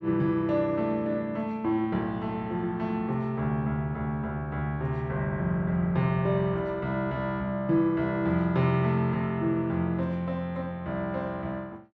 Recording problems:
none

